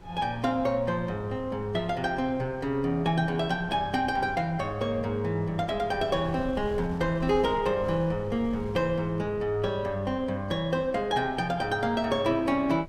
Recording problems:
wind on the microphone; below 190 Hz, SNR 18 dB

